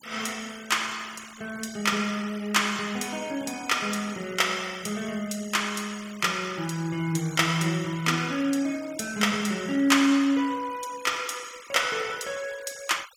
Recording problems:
denoising artefacts; signal-to-artefact ratio 18 dB

